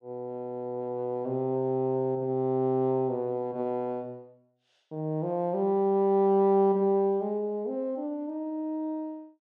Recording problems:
none

